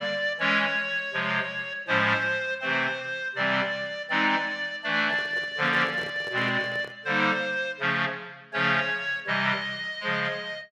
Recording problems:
handling noise; from 5 to 7 s; peak -9 dB vs average level

